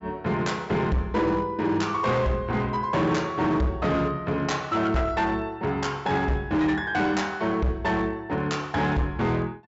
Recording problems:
low-pass filter; nothing above 8 kHz
distorted audio; hard clipping, signal-to-distortion ratio 11 dB

